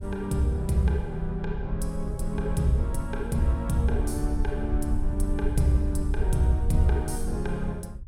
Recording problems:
low-frequency rumble; below 64 Hz, SNR 4 dB

